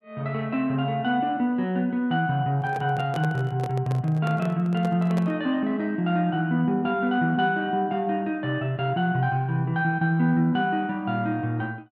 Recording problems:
handling noise; from 2.5 to 5.5 s; peak -5 dB vs average level

